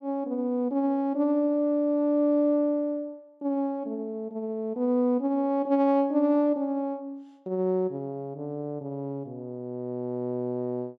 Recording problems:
none

